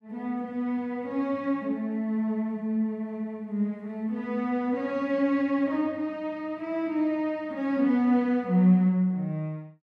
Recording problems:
none

